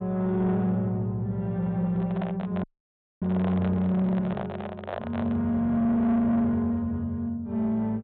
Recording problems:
low-pass filter; nothing above 4 kHz
distortion; soft clipping, signal-to-distortion ratio 11 dB
handling noise; from 2 to 5.5 s; peak -3 dB vs average level
audio freezing; at 2.5 s for 0.5 s

